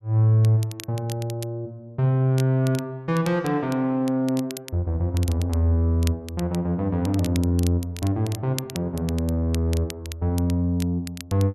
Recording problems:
crackling; vinyl, SNR 17 dB

